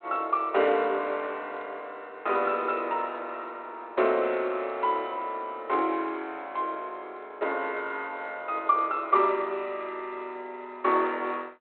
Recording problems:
phone line; 280 Hz to 3.4 kHz, G.726

